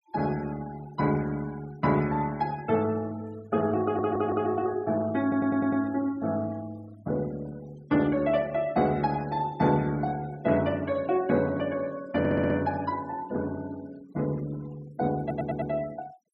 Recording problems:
noise reduction artefacts; signal-to-artefact ratio 23 dB
stutter; 4 times, first at 4 s

